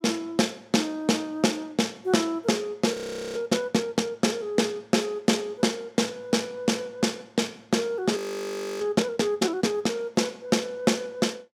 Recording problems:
frozen audio; at 3 s and at 8 s for 0.5 s

